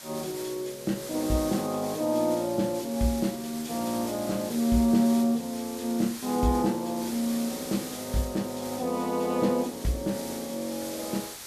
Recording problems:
hiss; slope 0 dB per octave, SNR 11 dB

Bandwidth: 14 kHz